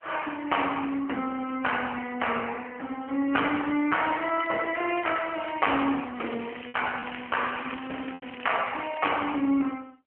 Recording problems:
phone line; 170 Hz to 3.1 kHz, AMR-NB
packet loss; 1.6% of the sound replaced, filled with repeated pitch periods
crackle; from 4 to 6 s and from 6 to 9 s; loose cable, SNR 14 dB

